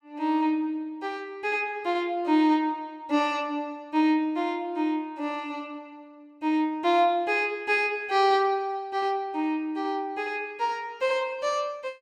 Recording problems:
none

